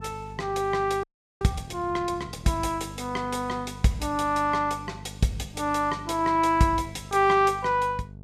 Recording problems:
electrical hum; 50 Hz, harmonics up to 700 Hz, SNR 16 dB
audio freezing; at 1 s

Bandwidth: 15 kHz